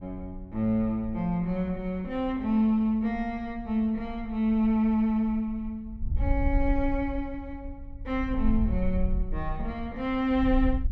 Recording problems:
wind noise; below 62 Hz, SNR 8 dB

